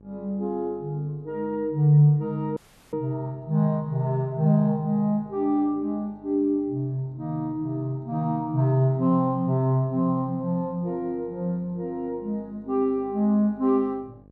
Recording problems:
hum; 50 Hz, harmonics up to 700 Hz, SNR 28 dB
dropout; at 2.5 s

